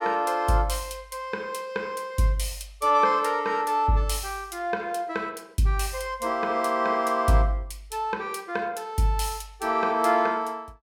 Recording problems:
none

